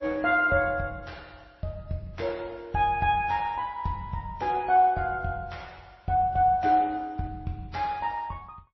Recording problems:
codec artefacts; MP3, then AAC, log-spectral distance 2 dB, nothing above 5.7 kHz

